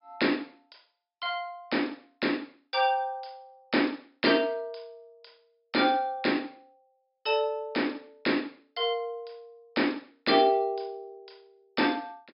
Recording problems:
treble missing; nothing above 5.5 kHz

